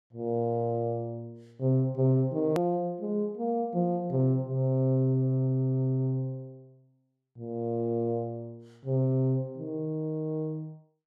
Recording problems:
edit click; at 2.5 s

